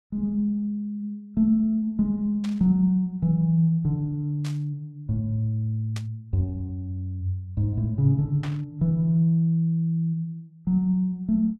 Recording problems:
burst of static; 4 times, first at 2.5 s; peak -9 dB vs average level

